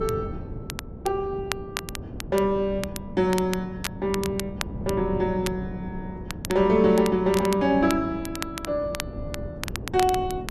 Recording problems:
wind on the microphone; below 270 Hz, SNR 12 dB
crackle; vinyl, SNR 12 dB

